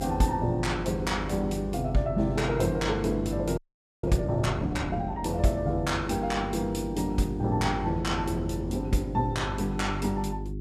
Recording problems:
hum; 50 Hz, harmonics up to 400 Hz, SNR 8 dB
frozen audio; at 3.5 s

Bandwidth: 14.5 kHz